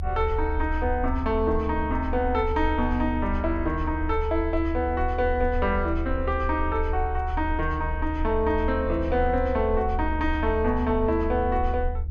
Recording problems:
low-frequency rumble; below 74 Hz, strongest tone 28 Hz, SNR 5 dB

